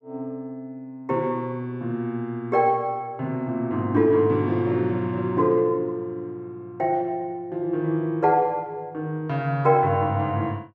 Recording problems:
none

